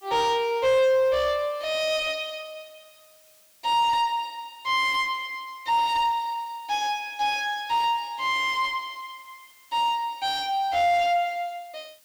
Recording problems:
distortion; soft clipping, signal-to-distortion ratio 9 dB
hiss; slope +2 dB per octave, SNR 29 dB

